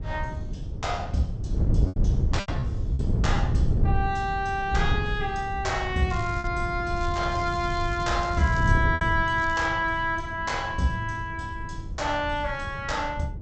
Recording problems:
low-pass filter; nothing above 8 kHz
wind noise; below 130 Hz, SNR 3 dB
lost packets; 3% of the sound replaced, filled with repeated pitch periods
crackle; at 6 s, from 7 to 8.5 s and at 9.5 s; loose cable, SNR 20 dB

